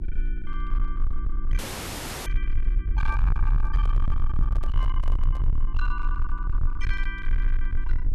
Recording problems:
distortion; hard clipping, signal-to-distortion ratio 7 dB
electrical hum; 60 Hz, harmonics up to 360 Hz, SNR 5 dB
low-frequency rumble; below 42 Hz, strongest tone 22 Hz, SNR -10 dB
frozen audio; at 1.5 s for 0.5 s
microphone handling noise; from 3 to 5.5 s; peak +3 dB vs average level

